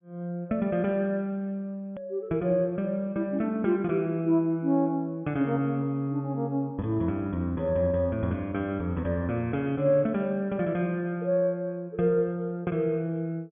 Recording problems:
low-pass filter; nothing above 3.4 kHz
hard cut with a click; at 2 s

